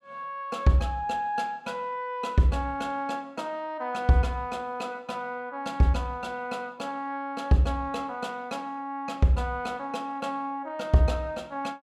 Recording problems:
none

